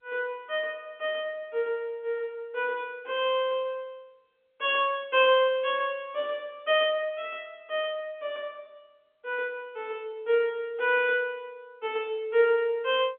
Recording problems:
telephone audio; 240 Hz to 3.5 kHz, G.711

